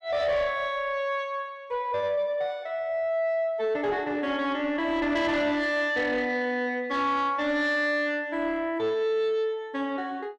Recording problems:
distorted audio; soft clipping, signal-to-distortion ratio 11 dB

